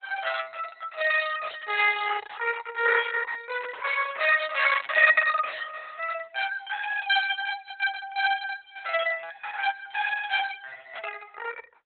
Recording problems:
lossy codec; Opus, log-spectral distance 5 dB, nothing above 4 kHz

